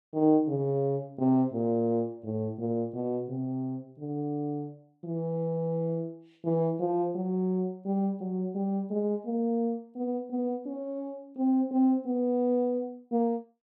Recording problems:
none

